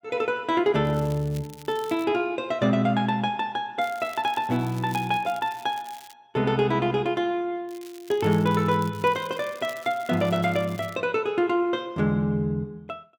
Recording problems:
crackle; from 1 to 2 s, from 4 to 6 s and from 7.5 to 11 s; loose cable, SNR 22 dB

